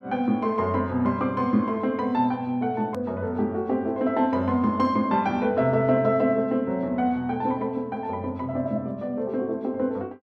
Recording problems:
edit click; at 3 s

